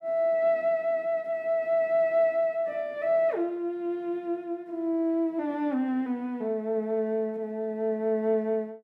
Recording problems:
none

